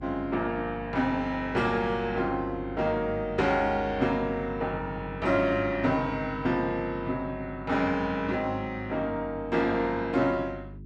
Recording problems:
mains hum; 50 Hz, harmonics up to 400 Hz, SNR 15 dB

